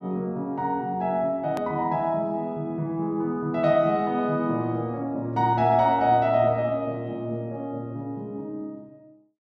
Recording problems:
edit click; at 1.5 s

